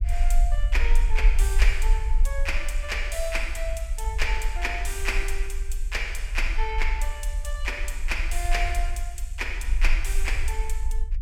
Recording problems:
rumble; below 44 Hz, strongest tone 26 Hz, SNR -3 dB

